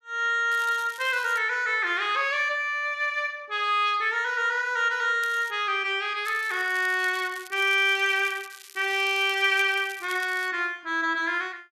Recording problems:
crackle; at 0.5 s, at 5 s and from 6.5 to 10 s; loose cable, SNR 20 dB

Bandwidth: 13.5 kHz